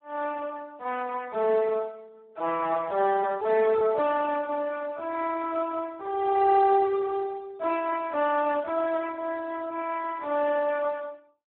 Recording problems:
phone line; 340 Hz to 2.3 kHz, Speex

